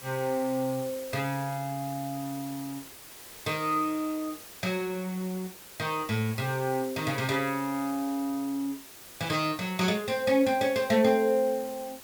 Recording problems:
background hiss; slope -2 dB per octave, SNR 15 dB

